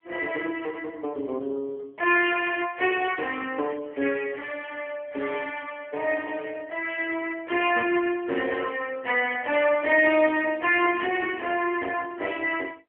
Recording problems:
phone line; 320 Hz to 3.2 kHz, AMR-NB

